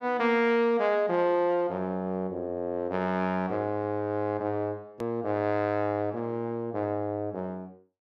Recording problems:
click at an edit; at 5 s

